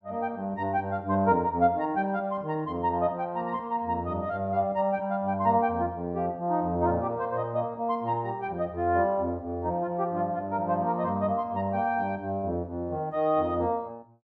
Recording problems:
none

